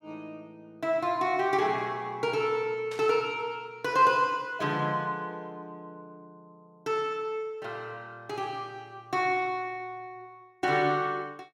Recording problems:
burst of static; at 3 s; peak -11 dB vs average level

